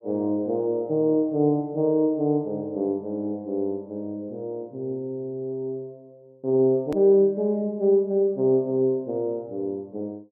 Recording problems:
hard cut with a click; at 7 s

